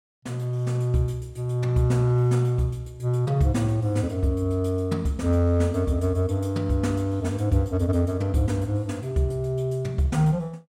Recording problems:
none

